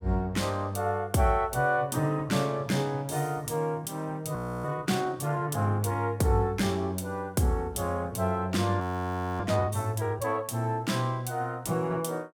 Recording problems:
frozen audio; at 4.5 s and at 9 s for 0.5 s

